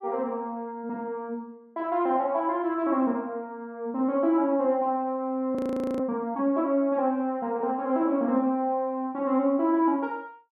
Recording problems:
audio freezing; at 5.5 s

